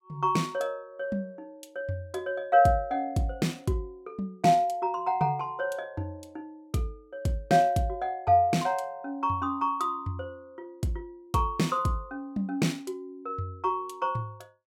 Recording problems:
none

